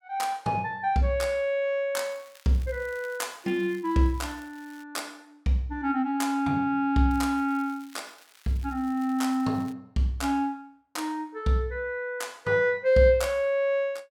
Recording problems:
crackling; from 2 to 5 s and from 7 to 9.5 s; loose cable, SNR 27 dB

